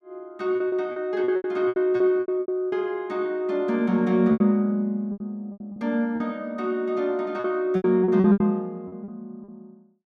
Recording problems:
packet loss; 13% of the sound replaced, filled with repeated pitch periods

